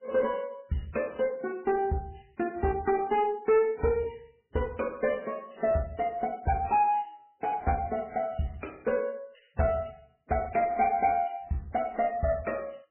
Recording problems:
lossy compression; AAC, then MP3, log-spectral distance 5 dB, nothing above 2.5 kHz
distorted audio; soft clipping, signal-to-distortion ratio 11 dB

